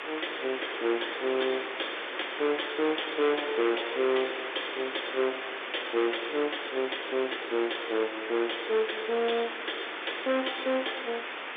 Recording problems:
telephone audio; 840 Hz to 3.6 kHz, G.711
distortion; hard clipping, signal-to-distortion ratio 8 dB
background hiss; SNR 5 dB

